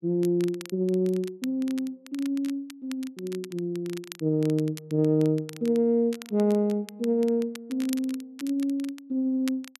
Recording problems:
crackle; vinyl, SNR 19 dB

